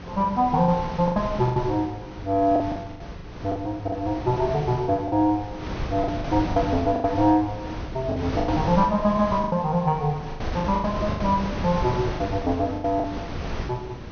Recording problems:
treble missing; nothing above 6.4 kHz
hum; 60 Hz, harmonics up to 480 Hz, SNR 23 dB
wind on the microphone; below 650 Hz, SNR 9 dB
lost packets; 11% of the sound replaced, filled with the last packet

